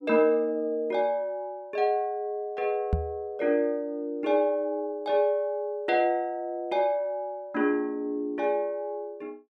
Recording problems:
knock on the microphone; at 3 s; peak +5 dB vs average level

